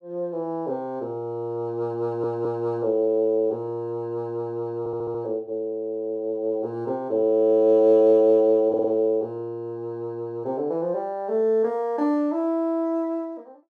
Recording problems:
audio stuttering; at 2 s, at 5 s and at 8.5 s

